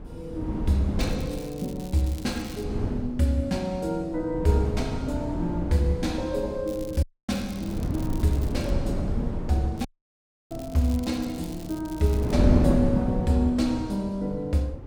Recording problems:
wind on the microphone; below 240 Hz, SNR 3 dB
crackling; from 1 to 2.5 s, from 6.5 to 8.5 s and from 10 to 12 s; loose cable, SNR 20 dB
audio cutting out; at 7 s and at 10 s for 0.5 s

